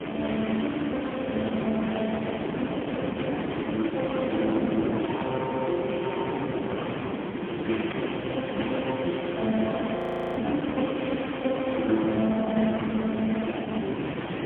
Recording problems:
telephone audio; 150 Hz to 3.3 kHz, AMR-NB, then MP3
distortion; hard clipping, uneven, signal-to-distortion ratio 15 dB
hiss; SNR 12 dB
wind noise; below 610 Hz, SNR 4 dB
frozen audio; at 10 s

